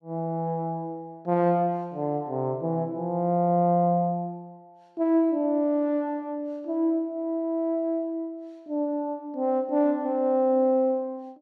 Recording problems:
none

